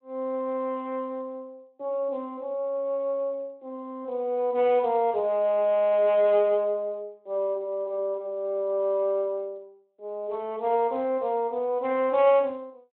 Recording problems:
telephone audio; 300 Hz to 3.3 kHz, Speex

